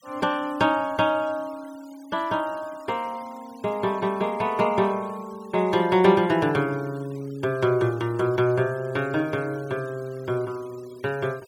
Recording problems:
denoising artefacts; signal-to-artefact ratio 25 dB

